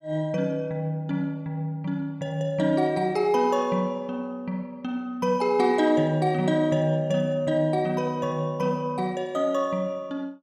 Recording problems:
none

